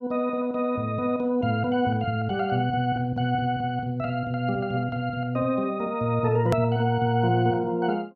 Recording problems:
edit click; at 6.5 s

